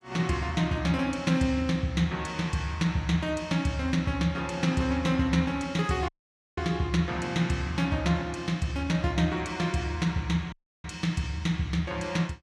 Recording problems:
audio cutting out; at 6 s and at 11 s

